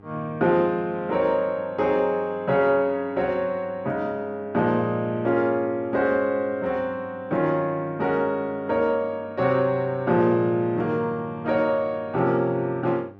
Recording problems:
hum; 50 Hz, harmonics up to 1.6 kHz, SNR 24 dB

